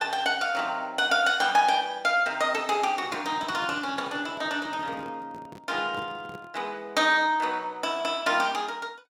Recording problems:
handling noise; from 3 to 6.5 s; peak -11 dB vs average level

